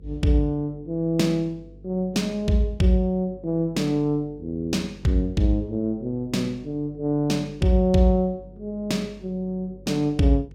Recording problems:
hum; 50 Hz, harmonics up to 500 Hz, SNR 23 dB

